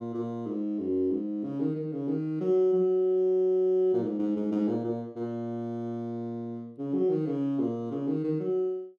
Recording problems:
none

